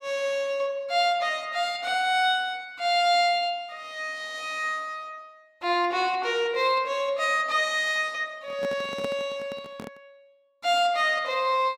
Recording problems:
microphone handling noise; from 8.5 to 10 s; peak -6 dB vs average level

